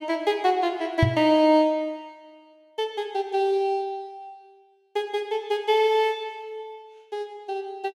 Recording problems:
microphone bump; at 1 s; peak +7 dB vs average level

